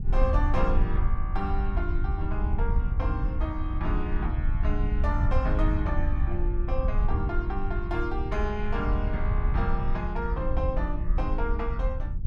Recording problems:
wind noise; below 68 Hz, SNR -4 dB

